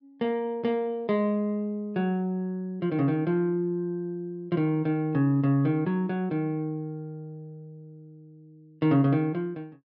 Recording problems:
treble cut off; nothing above 5.5 kHz

